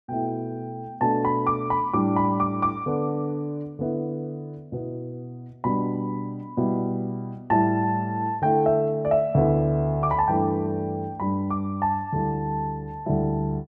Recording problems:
none

